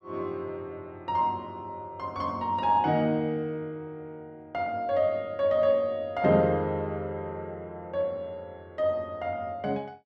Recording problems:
none

